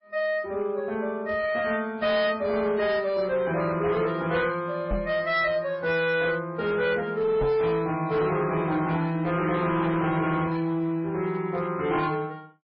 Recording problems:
lossy compression; MP3, log-spectral distance 2 dB, nothing above 4.6 kHz
distortion; hard clipping, uneven, signal-to-distortion ratio 11 dB
microphone thump; at 5 s and at 7.5 s; peak 0 dB vs average level

